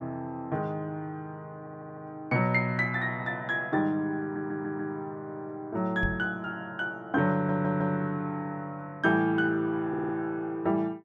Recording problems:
audio stuttering; 4 times, first at 1.5 s
microphone thump; at 6 s; peak +1 dB vs average level

